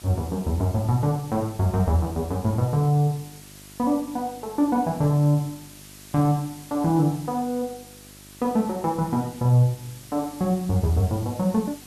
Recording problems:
hum; 50 Hz, harmonics up to 1 kHz, SNR 26 dB
hiss; slope +1 dB per octave, SNR 21 dB

